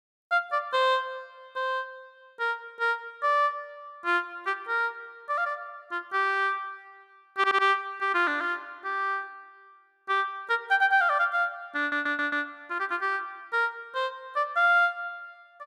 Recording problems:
audio stuttering; at 7.5 s and at 12 s

